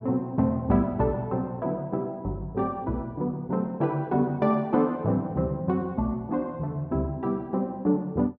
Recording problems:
none

